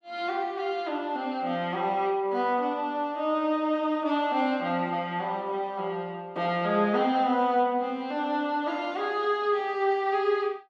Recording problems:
none

